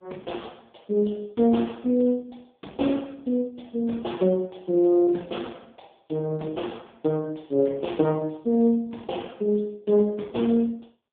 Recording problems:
telephone audio; 170 Hz to 3.5 kHz, AMR-NB

